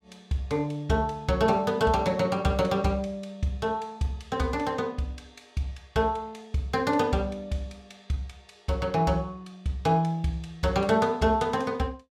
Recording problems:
none

